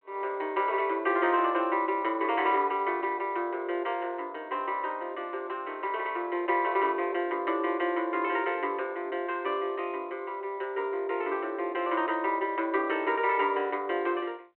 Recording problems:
telephone audio; 300 Hz to 3.1 kHz, G.726

